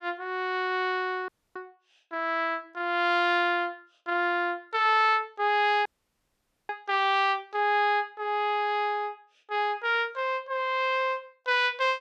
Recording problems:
dropout; at 1.5 s and at 6 s for 1 s

